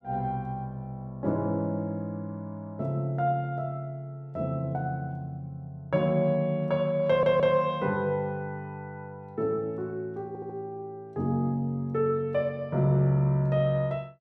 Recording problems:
audio stuttering; at 7 s and at 10 s

